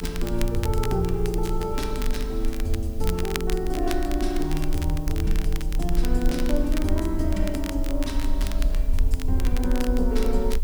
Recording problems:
hiss; slope +1 dB per octave, SNR 22 dB
low-frequency rumble; below 42 Hz, strongest tone 22 Hz, SNR 2 dB
crackling; vinyl, SNR 11 dB

